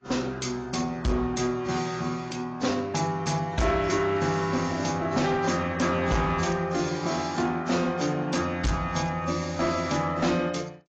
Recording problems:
lossy compression; AAC, log-spectral distance 4 dB
distorted audio; hard clipping, uneven, signal-to-distortion ratio 10 dB

